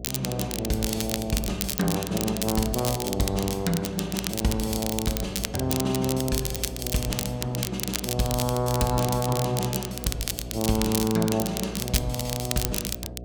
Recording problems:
hum; 60 Hz, harmonics up to 720 Hz, SNR 13 dB
crackle; vinyl, SNR 4 dB

